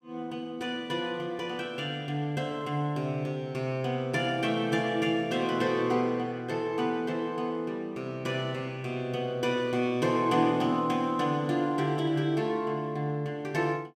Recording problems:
none

